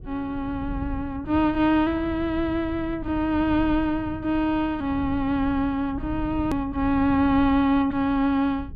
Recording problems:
low-frequency rumble; below 120 Hz, SNR 14 dB
edit click; at 6.5 s

